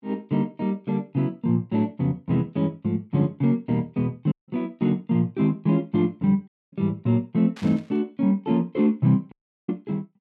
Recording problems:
dropout; at 4.5 s, at 6.5 s and at 9.5 s
burst of static; at 7.5 s; peak -14 dB vs average level

